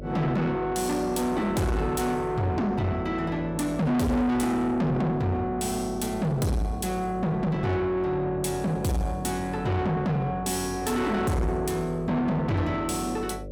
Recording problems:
distorted audio; soft clipping, signal-to-distortion ratio 6 dB
hum; 50 Hz, harmonics up to 600 Hz, SNR 14 dB

